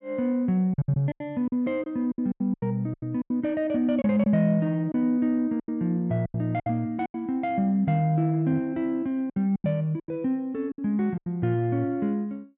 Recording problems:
lost packets; 11% of the sound replaced, filled with silence

